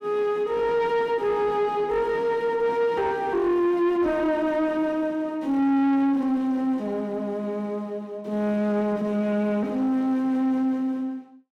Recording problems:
distortion; soft clipping, signal-to-distortion ratio 11 dB

